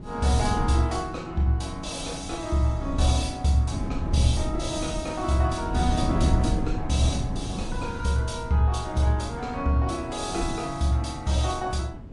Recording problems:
codec artefacts; MP3, log-spectral distance 2 dB, nothing above 11 kHz
wind noise; below 210 Hz, SNR 7 dB

